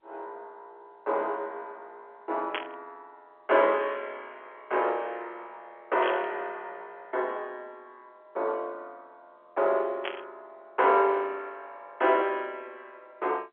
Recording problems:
telephone audio; 320 Hz to 3.4 kHz, G.711
burst of static; at 2.5 s, at 6 s and at 10 s; peak +1 dB vs average level

